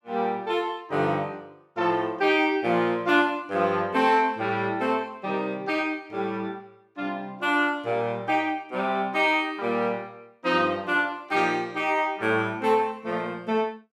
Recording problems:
none

